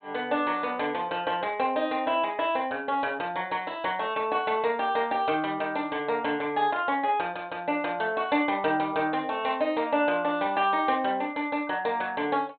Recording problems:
treble cut off; nothing above 4 kHz

